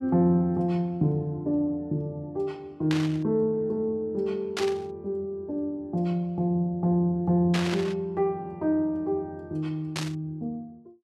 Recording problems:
burst of static; 4 times, first at 3 s; peak +1 dB vs average level

